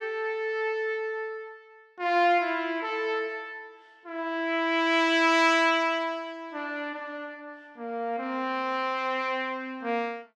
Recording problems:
none

